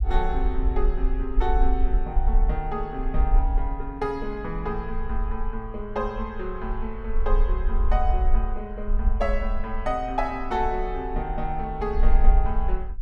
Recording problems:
low-frequency rumble; below 46 Hz, strongest tone 22 Hz, SNR -2 dB

